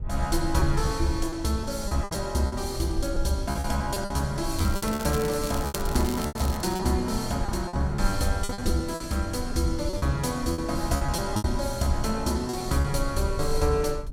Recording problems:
low-frequency rumble; below 60 Hz, strongest tone 20 Hz, SNR 9 dB
lost packets; 10% of the sound replaced, filled with repeated pitch periods
crackling; from 4.5 to 7 s; loose cable, SNR 11 dB

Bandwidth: 16 kHz